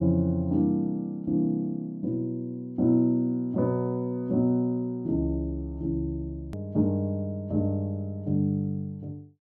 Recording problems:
low-pass filter; nothing above 8 kHz
click at an edit; at 6.5 s

